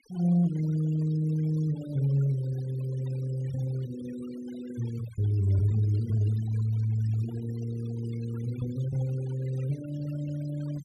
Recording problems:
noise reduction artefacts; signal-to-artefact ratio 18 dB

